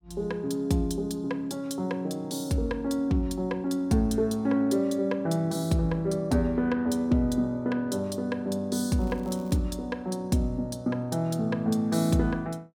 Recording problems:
crackling; at 9 s; loose cable, SNR 29 dB

